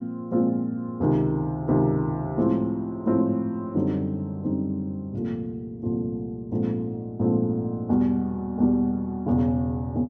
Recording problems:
none

